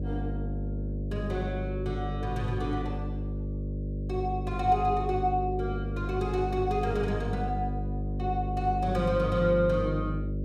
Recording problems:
hum; 50 Hz, harmonics up to 600 Hz, SNR 3 dB

